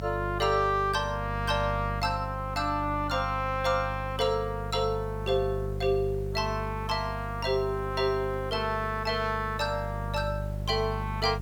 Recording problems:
hum; 50 Hz, harmonics up to 550 Hz, SNR 7 dB
hiss; slope -6 dB per octave, SNR 25 dB

